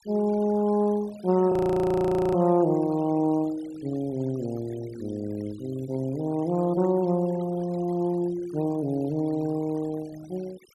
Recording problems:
denoising artefacts; signal-to-artefact ratio 22 dB
frozen audio; at 1.5 s for 1 s

